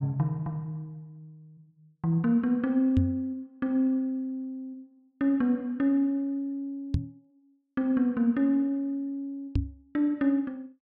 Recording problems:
microphone thump; at 3 s, at 7 s and at 9.5 s; peak +5 dB vs average level

